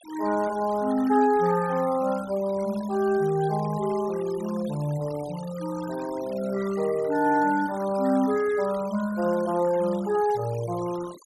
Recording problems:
denoising artefacts; signal-to-artefact ratio 19 dB

